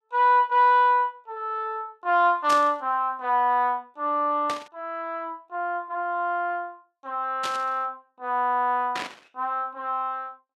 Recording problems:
static burst; 4 times, first at 2.5 s; peak -3 dB vs average level

